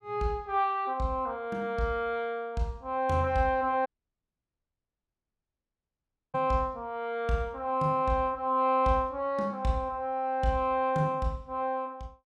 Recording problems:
audio cutting out; at 4 s for 2.5 s

